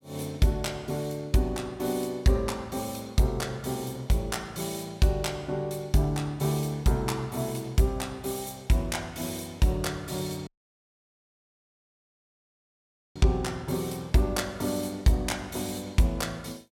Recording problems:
dropout; at 10 s for 2.5 s

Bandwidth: 16.5 kHz